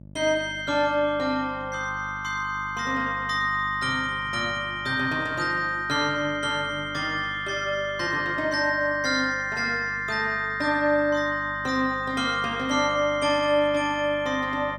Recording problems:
hum; 50 Hz, harmonics up to 650 Hz, SNR 19 dB

